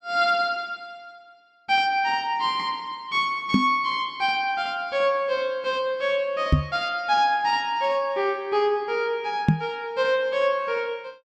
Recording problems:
microphone bump; at 3.5 s, at 6.5 s and at 9.5 s; peak +9 dB vs average level

